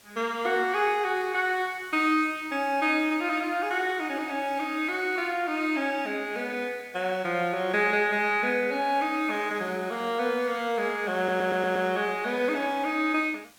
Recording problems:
hiss; slope -1 dB per octave, SNR 25 dB
stutter; at 11 s

